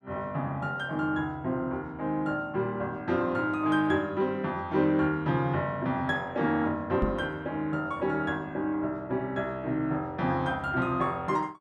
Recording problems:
microphone thump; at 7 s; peak +3 dB vs average level

